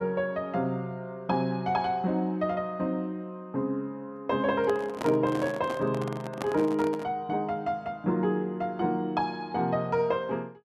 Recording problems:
handling noise; from 4.5 to 7 s; peak -1 dB vs average level

